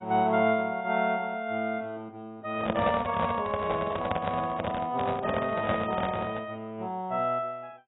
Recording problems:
lossy codec; AAC, log-spectral distance 3 dB, nothing above 3.1 kHz
microphone handling noise; from 2.5 to 6.5 s; peak +4 dB vs average level

